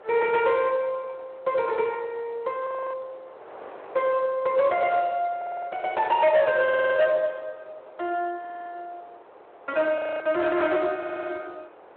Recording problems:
telephone audio; 370 Hz to 3.4 kHz, Speex
distortion; soft clipping, signal-to-distortion ratio 12 dB
wind noise; below 1 kHz, SNR 22 dB
frozen audio; at 2.5 s and at 10 s
stutter; 4 times, first at 5.5 s

